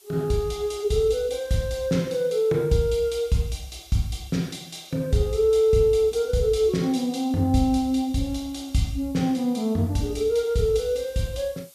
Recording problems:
hiss; SNR 27 dB

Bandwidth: 14.5 kHz